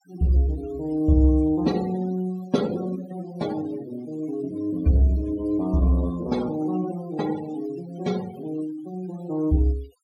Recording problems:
denoising artefacts; signal-to-artefact ratio 19 dB

